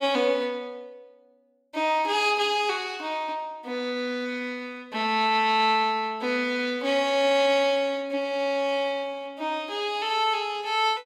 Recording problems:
none

